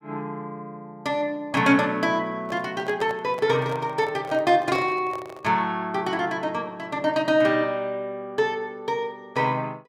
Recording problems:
microphone handling noise; from 2.5 to 5.5 s; peak -5 dB vs average level

